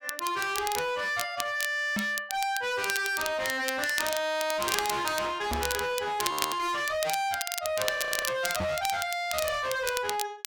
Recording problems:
distortion; hard clipping, signal-to-distortion ratio 7 dB
crackle; vinyl, SNR 6 dB
knock on the microphone; at 2 s, at 5.5 s and at 8.5 s; peak +2 dB vs average level
audio freezing; at 6.5 s and at 8 s

